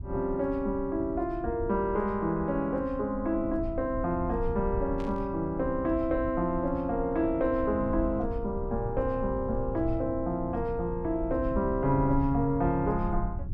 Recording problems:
low-frequency rumble; below 90 Hz, SNR 10 dB
static burst; at 5 s; peak -15 dB vs average level

